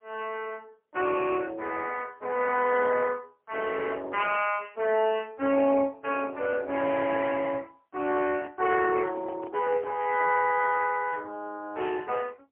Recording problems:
telephone audio; 240 Hz to 2.6 kHz, AMR-NB, then MP3
microphone handling noise; from 8 to 11 s; peak -10 dB vs average level

